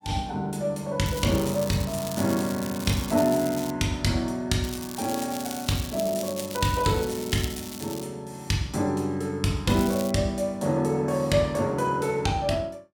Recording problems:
crackling; from 1 to 3.5 s, from 4.5 to 8 s and at 9.5 s; loose cable, SNR 11 dB

